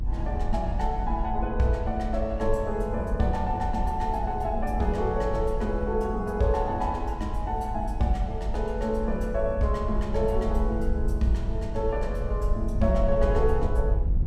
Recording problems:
rumble; below 64 Hz, SNR 3 dB

